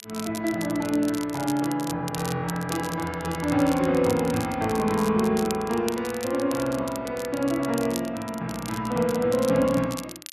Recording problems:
crackling; vinyl, SNR 14 dB

